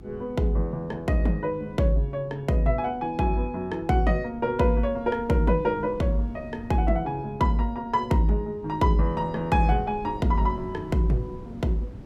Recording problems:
hum; 50 Hz, harmonics up to 400 Hz, SNR 23 dB
wind on the microphone; below 240 Hz, SNR 19 dB

